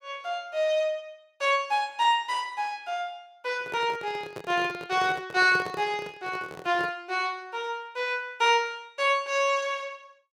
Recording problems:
handling noise; from 3.5 to 7 s; peak -5 dB vs average level

